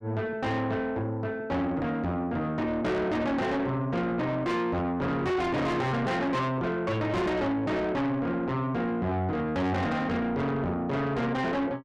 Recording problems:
distortion; soft clipping, signal-to-distortion ratio 7 dB

